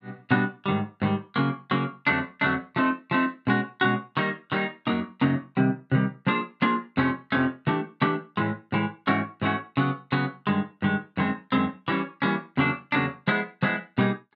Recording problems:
none

